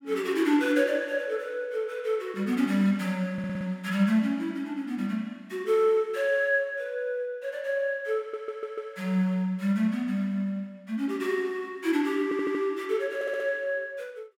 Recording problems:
stutter; 4 times, first at 3.5 s

